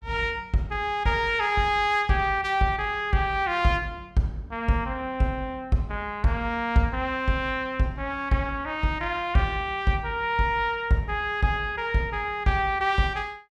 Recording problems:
none

